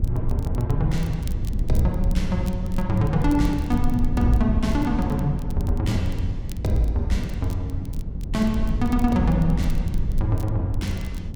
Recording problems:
low-frequency rumble; below 94 Hz, SNR 2 dB
crackle; vinyl, SNR 24 dB

